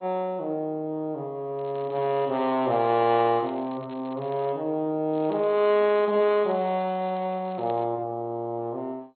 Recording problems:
codec artefacts; MP2, log-spectral distance 2 dB, nothing above 3.6 kHz
crackle; from 1.5 to 4.5 s and from 5 to 8 s; loose cable, SNR 29 dB

